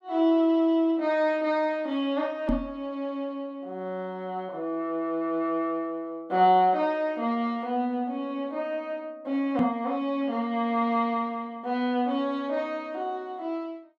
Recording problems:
microphone bump; at 2.5 s and at 9.5 s; peak +5 dB vs average level

